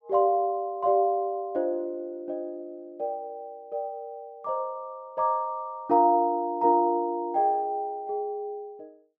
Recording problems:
none

